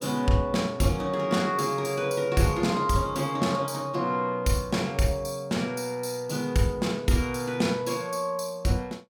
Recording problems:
none

